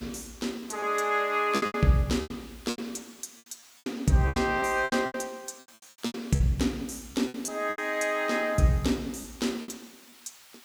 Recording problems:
background hiss; SNR 24 dB
lost packets; 12% of the sound replaced, filled with repeated pitch periods

